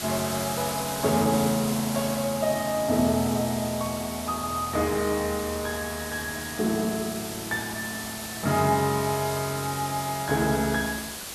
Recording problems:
hiss; slope -1 dB per octave, SNR 7 dB

